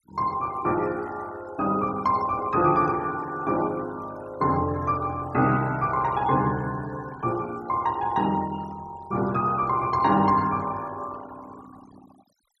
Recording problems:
denoising artefacts; signal-to-artefact ratio 21 dB

